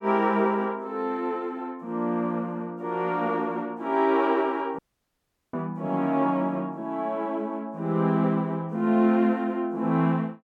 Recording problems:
dropout; at 5 s for 0.5 s

